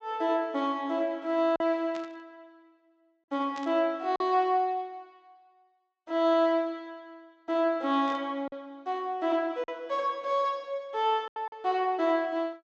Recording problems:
treble missing; nothing above 8 kHz
packet loss; 3% of the sound replaced, filled with silence
burst of static; at 2 s, at 3.5 s and at 8 s; peak -12 dB vs average level

